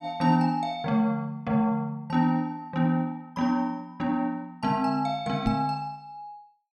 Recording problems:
microphone bump; at 5.5 s; peak +4 dB vs average level

